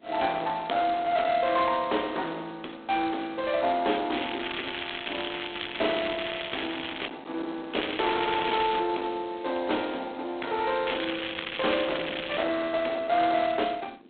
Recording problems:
phone line; 240 Hz to 4 kHz, G.726
distorted audio; hard clipping, uneven, signal-to-distortion ratio 13 dB
wind noise; below 1.6 kHz, SNR 18 dB
crackling; from 4 to 7 s, from 7.5 to 9 s and from 11 to 12 s; loose cable, SNR 6 dB

